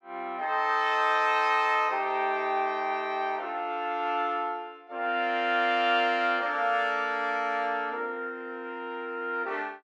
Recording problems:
none

